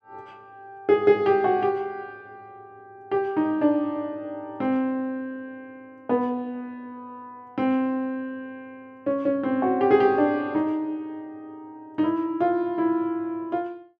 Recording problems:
none

